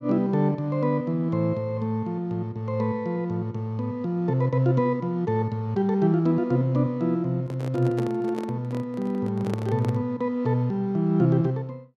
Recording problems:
microphone handling noise; from 7.5 to 10 s; peak -4 dB vs average level

